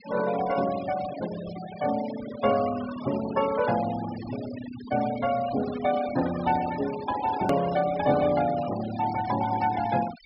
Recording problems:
low-pass filter; nothing above 5.4 kHz
denoising artefacts; signal-to-artefact ratio 13 dB
click at an edit; at 7.5 s

